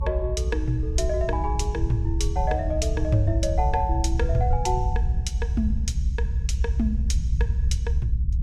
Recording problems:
low-frequency rumble; below 72 Hz, SNR -2 dB

